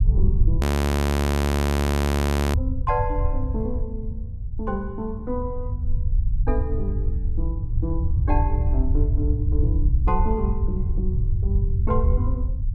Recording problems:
low-frequency rumble; below 98 Hz, SNR -7 dB
audio freezing; at 0.5 s for 2 s

